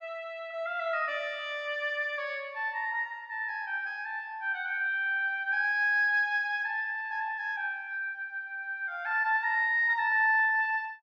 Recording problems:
none

